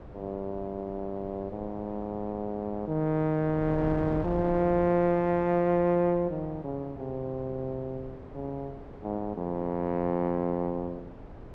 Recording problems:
wind on the microphone; below 510 Hz, SNR 14 dB

